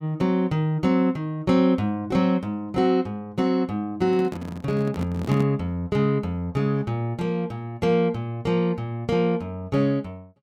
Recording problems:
handling noise; from 4 to 5.5 s; peak -1 dB vs average level

